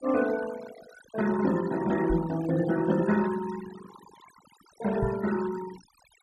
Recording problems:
noise reduction artefacts; signal-to-artefact ratio 14 dB
microphone thump; at 2 s and at 5 s; peak +2 dB vs average level

